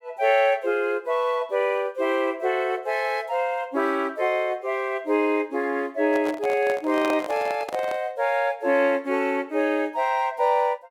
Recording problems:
microphone handling noise; from 6 to 8 s; peak -1 dB vs average level

